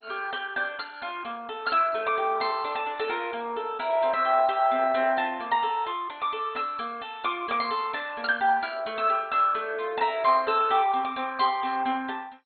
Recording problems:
lossy compression; MP2, then MP2, log-spectral distance 4 dB, nothing above 4.1 kHz

